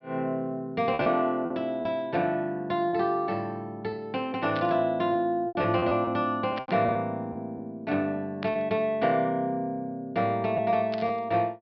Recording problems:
low-pass filter; nothing above 5.5 kHz
packet loss; 5% of the sound replaced, filled with repeated pitch periods
burst of static; 4 times, first at 4.5 s; peak -6 dB vs average level

